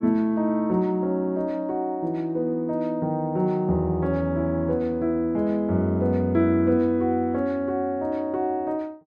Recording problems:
none

